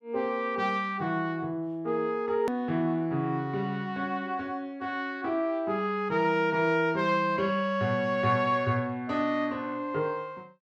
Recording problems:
edit click; at 2.5 s

